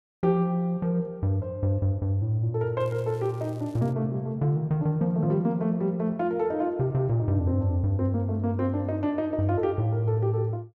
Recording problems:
crackle; from 3 to 4 s; loose cable, SNR 30 dB

